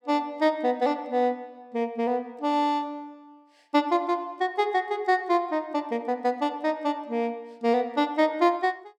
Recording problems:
none

